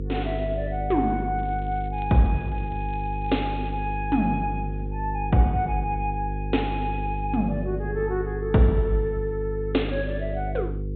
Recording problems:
treble cut off; nothing above 4 kHz
electrical hum; 50 Hz, harmonics up to 500 Hz, SNR 5 dB
crackling; from 1.5 to 4 s; loose cable, SNR 29 dB

